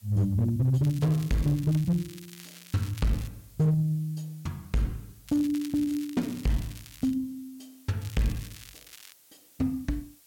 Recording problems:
distortion; hard clipping, uneven, signal-to-distortion ratio 11 dB
hiss; slope +1 dB per octave, SNR 27 dB
crackle; from 1 to 3.5 s, from 5.5 to 7 s and from 8 to 9 s; loose cable, SNR 19 dB

